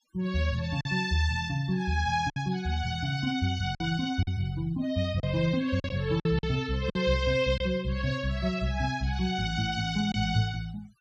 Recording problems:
denoising artefacts; signal-to-artefact ratio 23 dB
packet loss; 4% of the sound replaced, filled with silence

